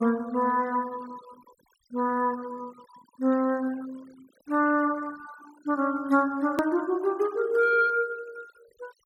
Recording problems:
noise reduction artefacts; signal-to-artefact ratio 24 dB
hard cut with a click; at 6.5 s

